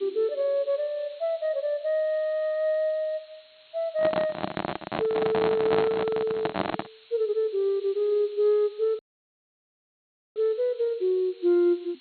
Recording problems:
treble cut off; nothing above 4.3 kHz
hiss; SNR 27 dB
microphone handling noise; from 4 to 7 s; peak +3 dB vs average level
dropout; at 9 s for 1.5 s

